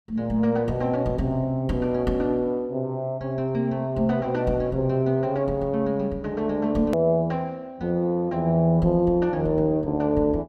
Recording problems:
hard cut with a click; at 7 s

